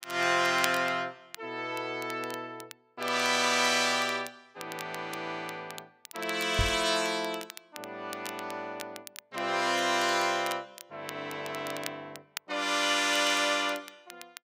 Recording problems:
crackle; vinyl, SNR 16 dB
microphone thump; at 6.5 s; peak +2 dB vs average level

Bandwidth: 15.5 kHz